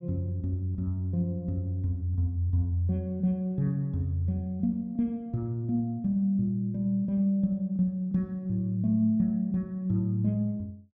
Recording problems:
none

